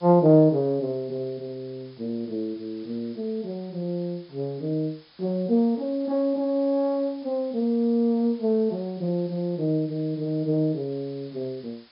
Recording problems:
low-pass filter; nothing above 5.5 kHz
hiss; slope +1 dB per octave, SNR 28 dB

